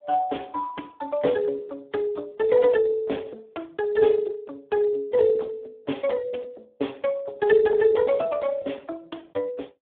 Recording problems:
phone line; 240 Hz to 2 kHz, Speex

